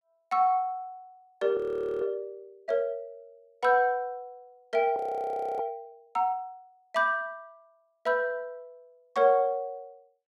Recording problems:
frozen audio; at 1.5 s and at 5 s for 0.5 s

